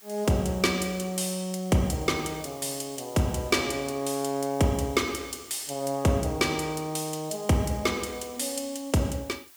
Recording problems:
background hiss; slope +2 dB per octave, SNR 21 dB

